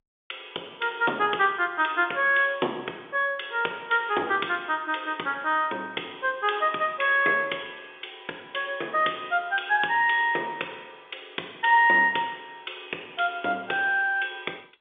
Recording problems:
phone line; 260 Hz to 3.6 kHz, G.711

